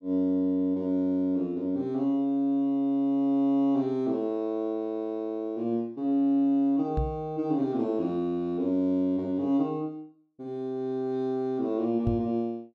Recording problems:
knock on the microphone; at 7 s and at 12 s; peak +2 dB vs average level

